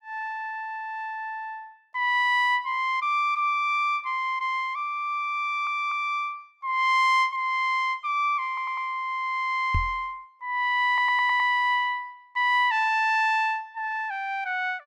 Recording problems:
audio stuttering; at 5.5 s, at 8.5 s and at 11 s
microphone bump; at 9.5 s; peak +1 dB vs average level

